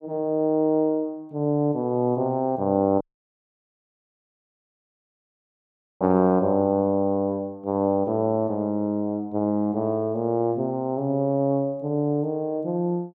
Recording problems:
audio cutting out; at 3 s for 3 s

